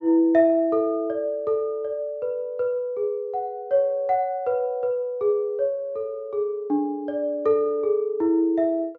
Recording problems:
treble missing; nothing above 7.5 kHz

